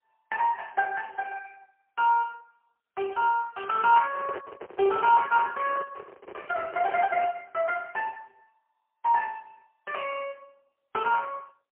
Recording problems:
phone line; 280 Hz to 2.8 kHz, AMR-NB, then MP3
microphone handling noise; from 4 to 7 s; peak -6 dB vs average level

